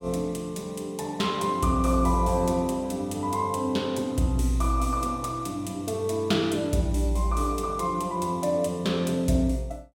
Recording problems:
none

